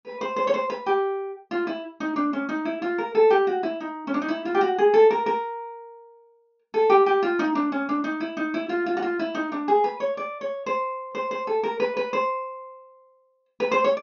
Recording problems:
low-pass filter; nothing above 6.9 kHz

